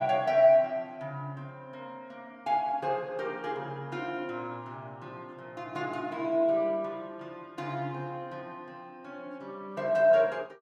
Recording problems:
none

